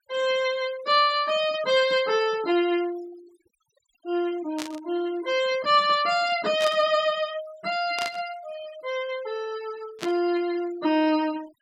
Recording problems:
denoising artefacts; signal-to-artefact ratio 21 dB
burst of static; 4 times, first at 4.5 s; peak -5 dB vs average level

